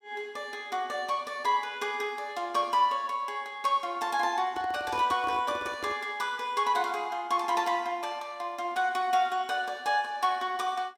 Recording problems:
handling noise; from 4.5 to 6 s; peak -7 dB vs average level

